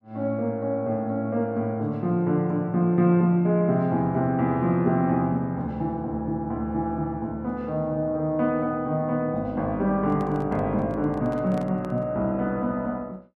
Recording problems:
handling noise; from 10 to 12 s; peak -10 dB vs average level

